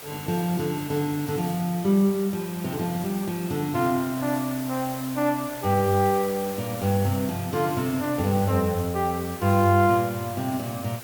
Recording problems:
background hiss; SNR 13 dB

